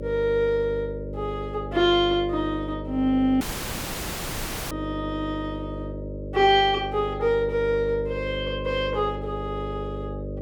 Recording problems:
electrical hum; 50 Hz, harmonics up to 600 Hz, SNR 9 dB
dropout; at 3.5 s for 1.5 s

